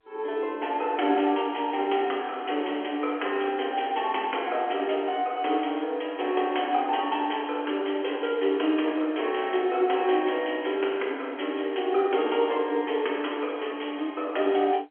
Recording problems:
telephone audio; 260 Hz to 3.3 kHz, G.711

